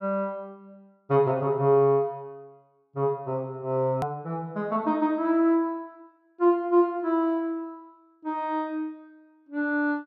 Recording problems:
edit click; at 4 s

